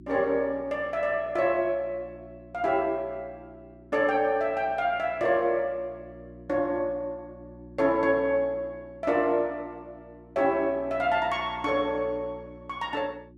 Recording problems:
hum; 60 Hz, harmonics up to 360 Hz, SNR 21 dB

